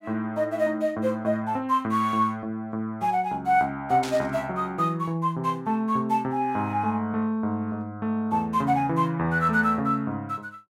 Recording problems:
burst of static; at 4 s; peak -5 dB vs average level

